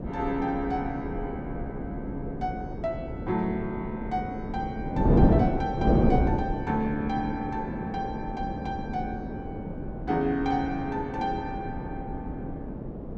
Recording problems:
wind noise; below 350 Hz, SNR -1 dB

